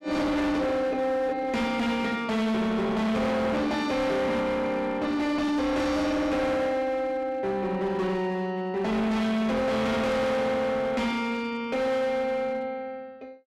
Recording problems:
distortion; hard clipping, signal-to-distortion ratio 7 dB

